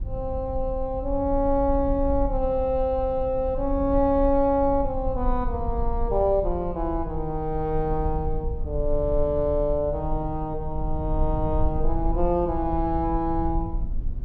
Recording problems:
rumble; below 58 Hz, SNR 7 dB

